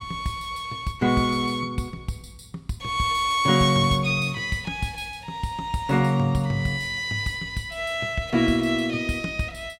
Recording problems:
none

